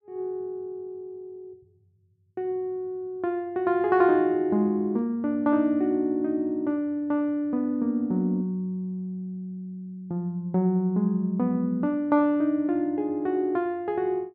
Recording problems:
none

